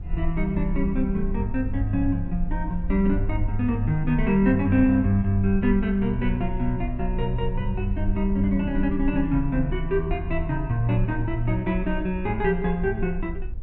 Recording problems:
rumble; below 52 Hz, strongest tone 22 Hz, SNR 8 dB

